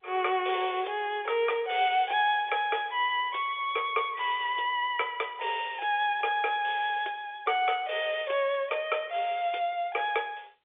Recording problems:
telephone audio; 320 Hz to 3.6 kHz, G.711

